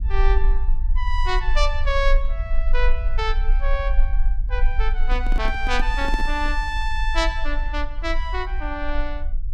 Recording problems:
low-frequency rumble; below 40 Hz, strongest tone 22 Hz, SNR -1 dB
microphone handling noise; from 5 to 6.5 s; peak -1 dB vs average level

